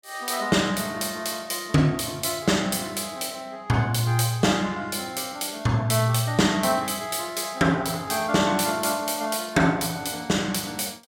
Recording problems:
none

